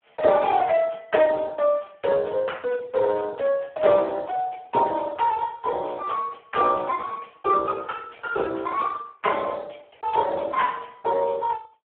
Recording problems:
phone line; 340 Hz to 3.5 kHz, Speex

